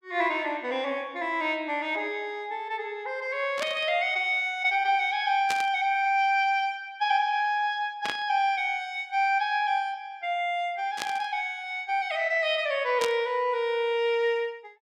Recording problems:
burst of static; 5 times, first at 3.5 s; peak -1 dB vs average level

